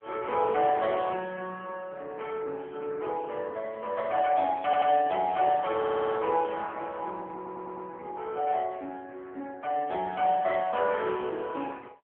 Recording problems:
telephone audio; 240 Hz to 3 kHz, AMR-NB
audio stuttering; at 4.5 s, at 6 s and at 7.5 s

